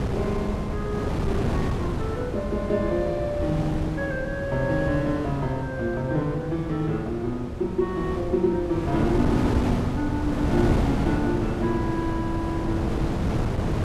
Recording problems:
wind noise; below 390 Hz, SNR 1 dB

